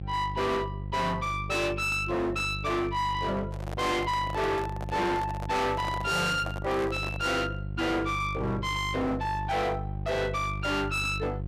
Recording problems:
distorted audio; hard clipping, signal-to-distortion ratio 7 dB
hum; 50 Hz, harmonics up to 550 Hz, SNR 8 dB
microphone handling noise; from 3.5 to 7.5 s; peak -4 dB vs average level

